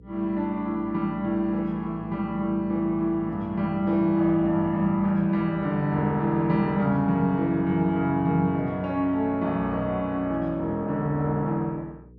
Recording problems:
hum; 60 Hz, harmonics up to 480 Hz, SNR 23 dB

